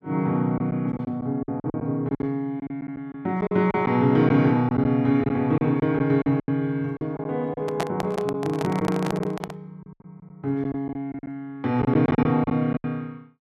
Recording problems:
packet loss; 11% of the sound replaced, filled with silence
microphone handling noise; from 7.5 to 9.5 s; peak +1 dB vs average level

